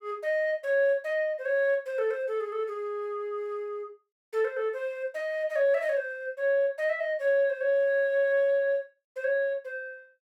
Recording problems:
none

